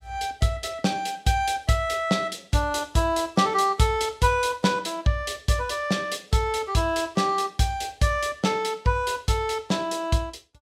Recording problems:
none

